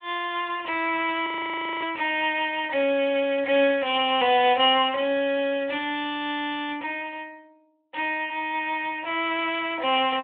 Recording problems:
phone line; 300 Hz to 3.5 kHz, Speex
audio freezing; at 1.5 s for 0.5 s

